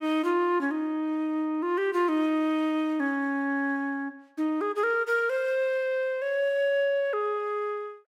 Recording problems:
none

